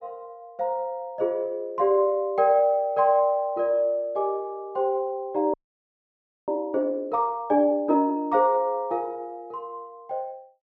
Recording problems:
frozen audio; at 5.5 s for 1 s

